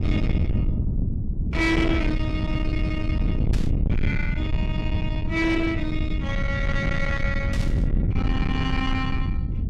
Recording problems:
distortion; soft clipping, signal-to-distortion ratio 6 dB
rumble; below 150 Hz, SNR -1 dB
burst of static; at 3.5 s and at 7.5 s; peak -6 dB vs average level

